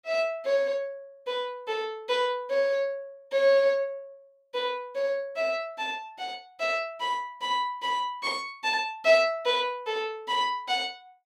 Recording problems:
none

